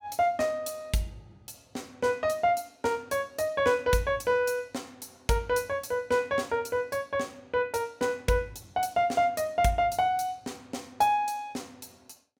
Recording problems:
none

